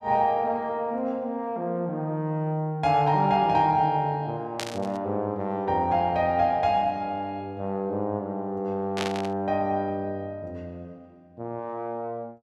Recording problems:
static burst; at 4.5 s and at 9 s; peak 0 dB vs average level

